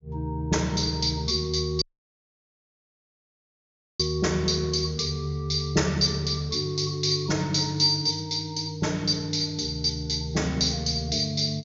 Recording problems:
treble missing; nothing above 7.2 kHz
audio cutting out; at 2 s for 2 s

